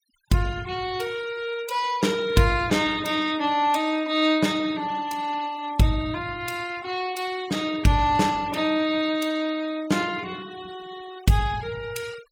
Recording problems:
noise reduction artefacts; signal-to-artefact ratio 19 dB

